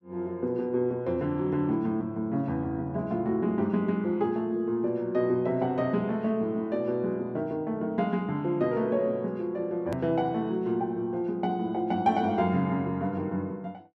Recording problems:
hard cut with a click; at 10 s

